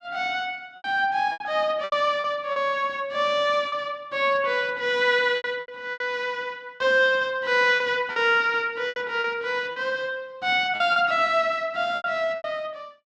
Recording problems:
packet loss; 9% of the sound replaced, filled with repeated pitch periods

